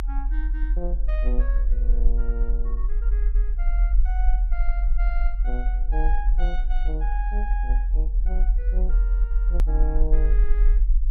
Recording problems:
rumble; below 44 Hz, strongest tone 42 Hz, SNR -13 dB
edit click; at 9.5 s

